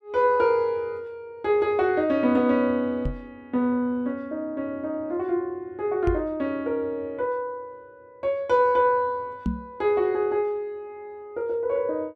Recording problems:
knock on the microphone; at 3 s, at 6 s and at 9.5 s; peak +2 dB vs average level

